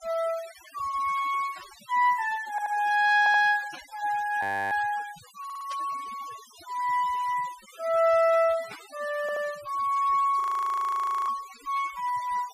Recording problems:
noise reduction artefacts; signal-to-artefact ratio 20 dB
static burst; 4 times, first at 1.5 s; peak -14 dB vs average level
stutter; 4 times, first at 2.5 s
frozen audio; at 4.5 s and at 10 s for 1 s

